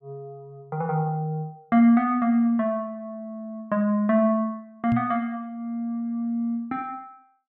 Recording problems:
microphone thump; at 5 s; peak -2 dB vs average level

